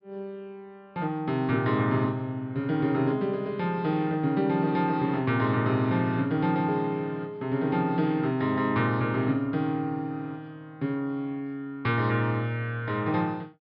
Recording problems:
treble cut off; nothing above 5.5 kHz

